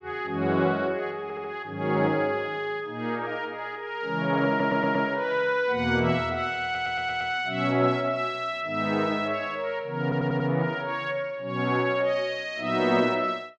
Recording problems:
audio stuttering; 4 times, first at 1 s

